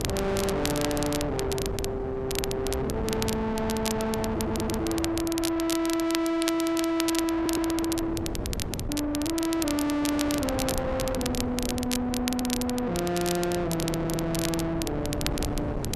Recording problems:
distorted audio; soft clipping, signal-to-distortion ratio 6 dB
wind noise; below 560 Hz, SNR 5 dB
crackling; vinyl, SNR 8 dB
audio stuttering; 4 times, first at 4.5 s

